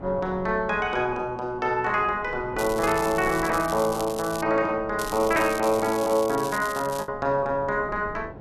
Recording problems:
wind noise; below 450 Hz, SNR 18 dB
lost packets; 0.7% of the sound replaced, filled with the last packet
crackle; from 2.5 to 4.5 s and from 5 to 7 s; loose cable, SNR 14 dB

